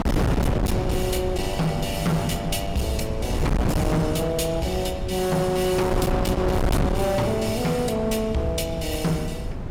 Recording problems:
distorted audio; hard clipping, signal-to-distortion ratio 6 dB
wind noise; below 350 Hz, SNR 3 dB

